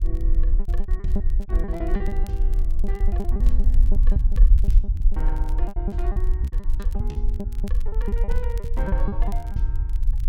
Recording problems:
rumble; below 48 Hz, SNR -12 dB
crackle; vinyl, SNR 18 dB
lost packets; 19% of the sound replaced, filled with repeated pitch periods

